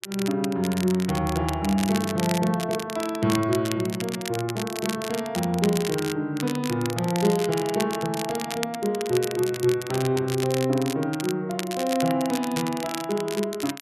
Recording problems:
crackle; vinyl, SNR 9 dB

